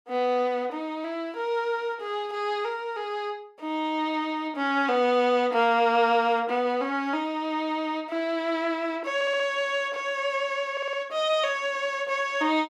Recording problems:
stutter; at 9 s and at 11 s

